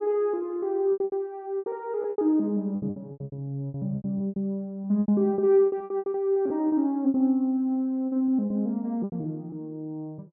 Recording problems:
lost packets; 16% of the sound replaced, filled with repeated pitch periods

